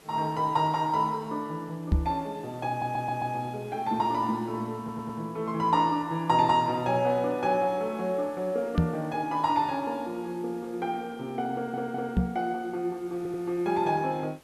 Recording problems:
background hiss; slope -4 dB per octave, SNR 26 dB
knock on the microphone; at 2 s, at 9 s and at 12 s; peak +8 dB vs average level
stutter; 4 times, first at 2.5 s

